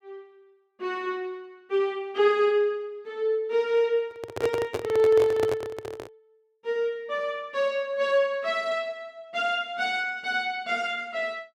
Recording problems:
microphone handling noise; from 4 to 6 s; peak +1 dB vs average level

